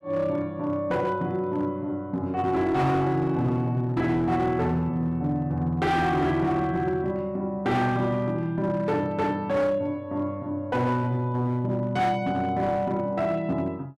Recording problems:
distorted audio; hard clipping, signal-to-distortion ratio 12 dB

